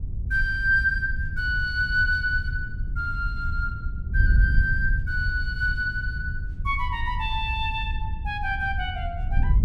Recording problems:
wind noise; below 80 Hz, SNR 3 dB

